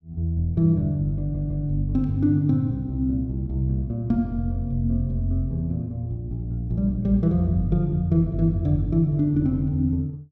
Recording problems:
audio stuttering; at 1 s

